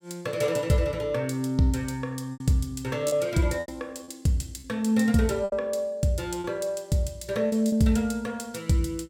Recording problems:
packet loss; 5% of the sound replaced, filled with repeated pitch periods

